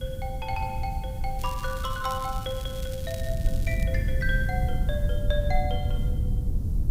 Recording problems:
background hiss; SNR 19 dB
rumble; below 94 Hz, SNR -3 dB
crackling; from 1.5 to 4 s; loose cable, SNR 12 dB

